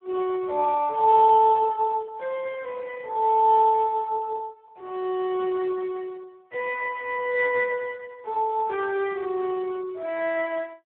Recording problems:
telephone audio; 320 Hz to 3 kHz, Speex

